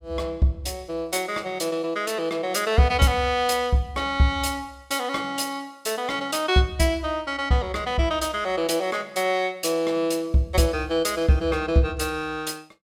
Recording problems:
none

